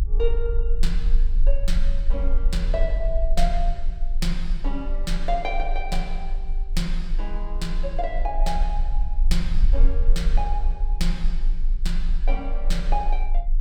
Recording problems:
rumble; below 36 Hz, strongest tone 24 Hz, SNR -5 dB

